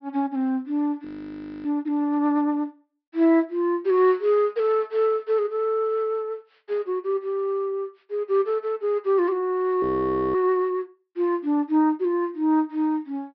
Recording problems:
treble missing; nothing above 5.5 kHz
frozen audio; at 1 s for 0.5 s and at 10 s for 0.5 s

